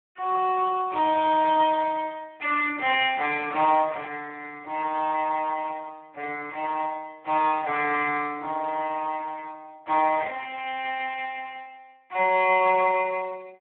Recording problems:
phone line; 320 Hz to 3.4 kHz, Speex

